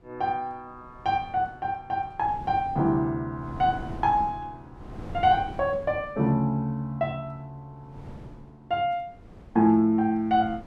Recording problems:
wind on the microphone; below 310 Hz, SNR 18 dB

